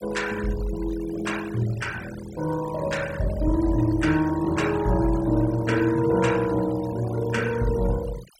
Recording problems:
denoising artefacts; signal-to-artefact ratio 17 dB

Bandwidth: 16 kHz